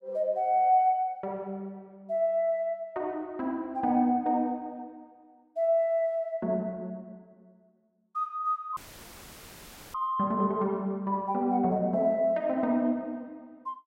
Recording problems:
dropout; at 9 s for 1 s; filled with static

